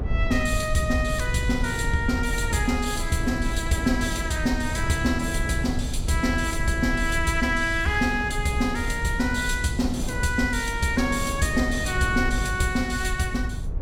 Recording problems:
low-frequency rumble; below 82 Hz, SNR 7 dB
wind on the microphone; below 410 Hz, SNR 12 dB

